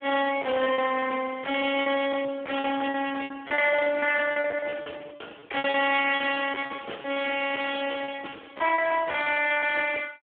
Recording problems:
phone line; 300 Hz to 3.1 kHz, Speex
distortion; hard clipping, signal-to-distortion ratio 10 dB
lost packets; 15% of the sound replaced, filled with repeated pitch periods

